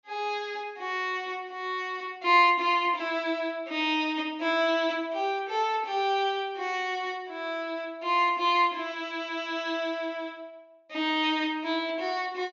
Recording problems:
treble missing; nothing above 7.2 kHz

